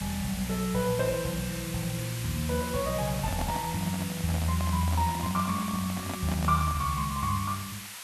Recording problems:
hiss; SNR 8 dB
handling noise; from 3 to 7 s; peak -3 dB vs average level

